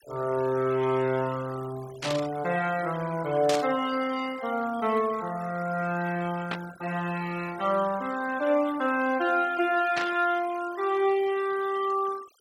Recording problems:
denoising artefacts; signal-to-artefact ratio 18 dB
static burst; 4 times, first at 2 s; peak 0 dB vs average level

